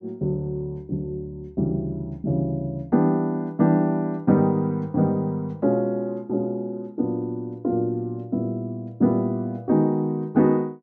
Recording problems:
none

